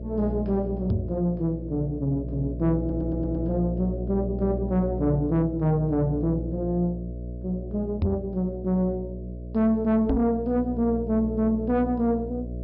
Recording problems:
treble missing; nothing above 5.5 kHz
distortion; soft clipping, signal-to-distortion ratio 11 dB
electrical hum; 60 Hz, harmonics up to 660 Hz, SNR 8 dB
knock on the microphone; at 1 s, at 8 s and at 10 s; peak +5 dB vs average level
stutter; at 3 s

